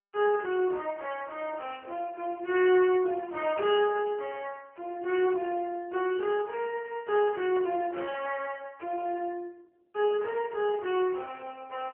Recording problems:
phone line; 320 Hz to 3.3 kHz, AMR-NB

